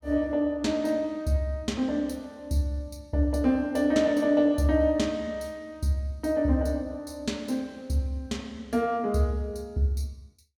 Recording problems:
none

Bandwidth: 17 kHz